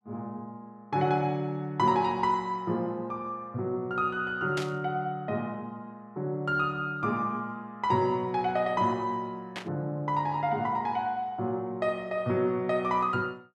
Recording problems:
burst of static; at 4.5 s and at 9.5 s; peak -2 dB vs average level

